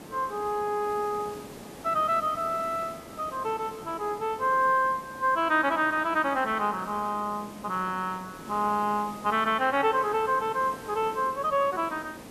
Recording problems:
background hiss; SNR 17 dB

